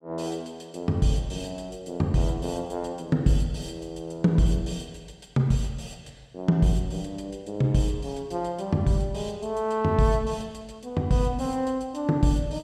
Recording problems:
none

